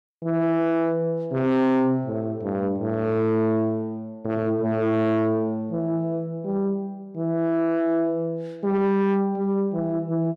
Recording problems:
distortion; soft clipping, signal-to-distortion ratio 8 dB

